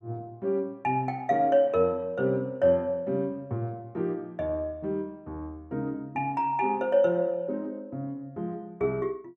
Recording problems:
none

